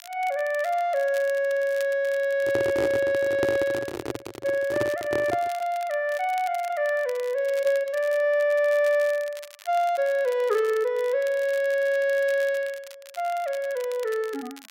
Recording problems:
crackling; vinyl, SNR 21 dB
microphone handling noise; from 2.5 to 5.5 s; peak +2 dB vs average level

